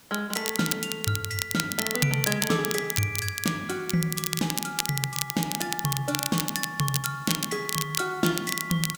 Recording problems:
hiss; slope -2 dB per octave, SNR 23 dB
crackle; vinyl, SNR 1 dB

